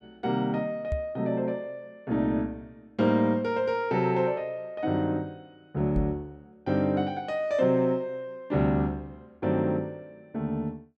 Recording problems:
microphone thump; at 1 s and at 6 s; peak +1 dB vs average level

